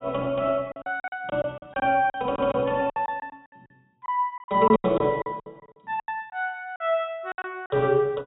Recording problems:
treble missing; nothing above 4 kHz
lost packets; 15% of the sound replaced, filled with silence

